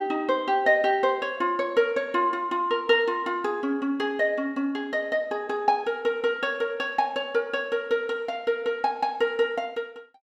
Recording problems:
none

